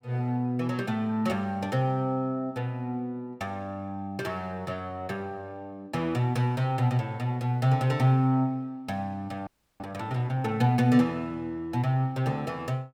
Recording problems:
frozen audio; at 9.5 s

